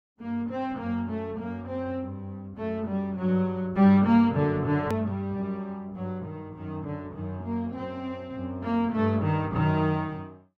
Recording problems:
click at an edit; at 5 s

